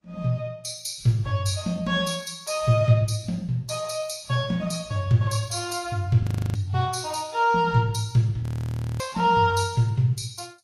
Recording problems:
codec artefacts; Vorbis, log-spectral distance 4 dB, nothing above 11.6 kHz
frozen audio; at 6 s and at 8.5 s for 0.5 s

